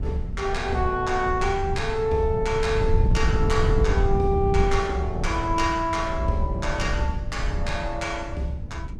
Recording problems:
wind noise; below 98 Hz, SNR 3 dB

